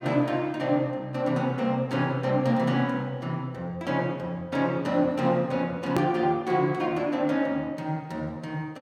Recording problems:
edit click; at 6 s

